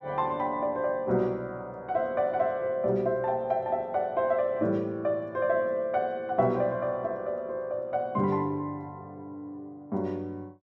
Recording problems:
none

